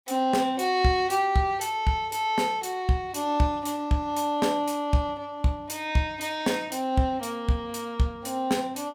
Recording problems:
none

